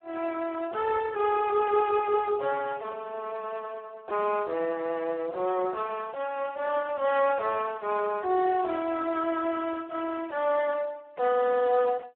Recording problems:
telephone audio; 320 Hz to 2 kHz, Speex

